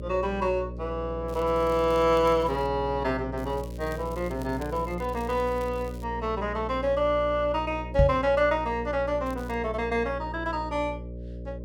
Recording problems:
hum; 60 Hz, harmonics up to 600 Hz, SNR 10 dB
crackling; from 1.5 to 2.5 s, from 3.5 to 6 s and at 9.5 s; loose cable, SNR 25 dB
microphone thump; at 8 s; peak +7 dB vs average level

